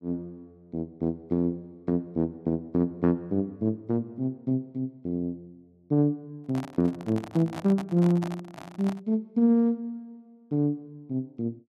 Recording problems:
microphone handling noise; from 6.5 to 9 s; peak -5 dB vs average level

